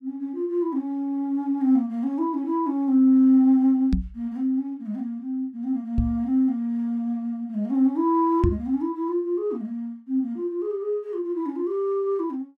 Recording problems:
knock on the microphone; at 4 s, at 6 s and at 8.5 s; peak +5 dB vs average level

